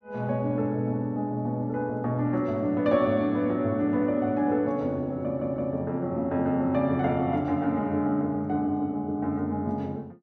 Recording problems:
audio stuttering; at 5 s

